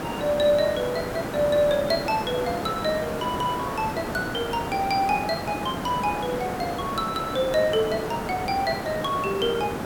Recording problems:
background hiss; SNR 5 dB

